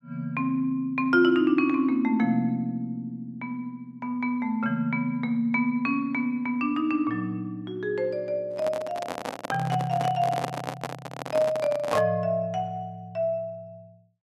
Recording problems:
microphone handling noise; from 8.5 to 12 s; peak +2 dB vs average level

